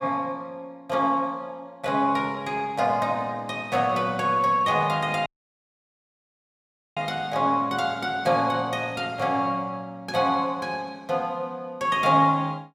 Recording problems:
audio cutting out; at 5.5 s for 1.5 s

